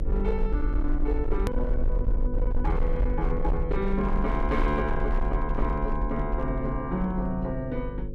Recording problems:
distorted audio; hard clipping, signal-to-distortion ratio 11 dB
hum; 50 Hz, harmonics up to 550 Hz, SNR 6 dB
low-frequency rumble; below 50 Hz, SNR 1 dB
edit click; at 1.5 s

